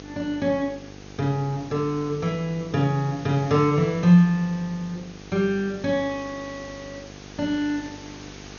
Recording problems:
treble cut off; nothing above 6.7 kHz
mains hum; 50 Hz, harmonics up to 1.6 kHz, SNR 20 dB
hiss; slope -2 dB per octave, SNR 21 dB

